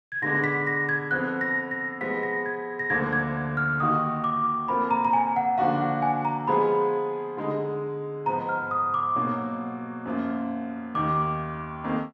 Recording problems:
none

